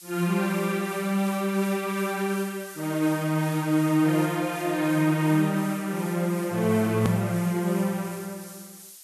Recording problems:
hiss; SNR 17 dB
click at an edit; at 7 s

